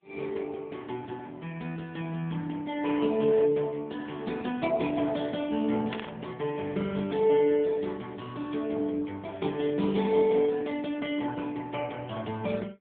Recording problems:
telephone audio; 130 Hz to 3.5 kHz, AMR-NB
static burst; at 6 s; peak -7 dB vs average level

